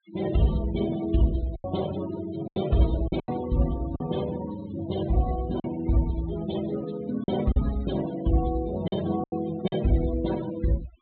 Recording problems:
low-pass filter; nothing above 4 kHz
noise reduction artefacts; signal-to-artefact ratio 13 dB
lost packets; 6% of the sound replaced, filled with silence

